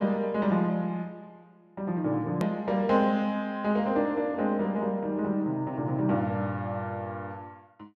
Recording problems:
click at an edit; at 2.5 s

